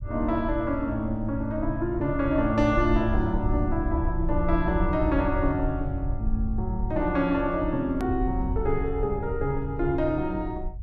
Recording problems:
rumble; below 76 Hz, SNR 6 dB
edit click; at 8 s

